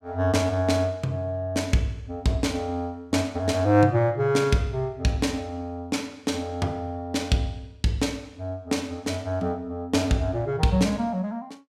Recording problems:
none

